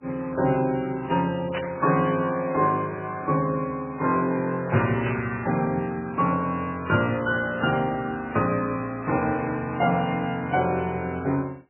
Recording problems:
codec artefacts; MP3, log-spectral distance 3 dB, nothing above 2.5 kHz
burst of static; at 1.5 s and at 5 s; peak -3 dB vs average level

